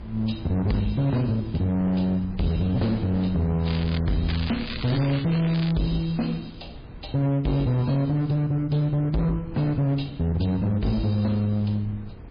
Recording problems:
lossy codec; MP3, log-spectral distance 3 dB, nothing above 11.3 kHz
distorted audio; hard clipping, uneven, signal-to-distortion ratio 7 dB
hum; 60 Hz, harmonics up to 480 Hz, SNR 27 dB
wind noise; below 200 Hz, SNR 17 dB
crackling; at 3.5 s and from 4.5 to 5.5 s; loose cable, SNR 11 dB

